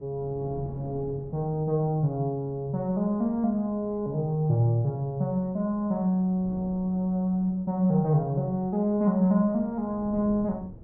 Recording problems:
wind on the microphone; below 280 Hz, SNR 20 dB

